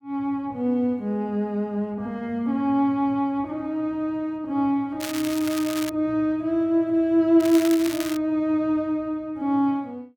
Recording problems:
crackle; at 5 s and at 7.5 s; loose cable, SNR 11 dB

